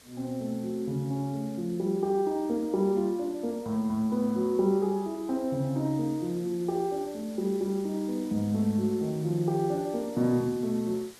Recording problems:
hiss; slope -1 dB per octave, SNR 22 dB

